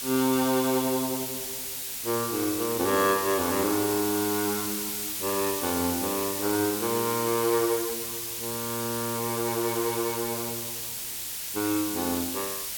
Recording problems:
background hiss; slope +2 dB per octave, SNR 2 dB

